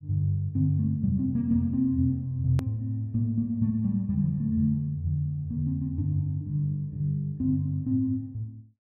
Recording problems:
hard cut with a click; at 2.5 s

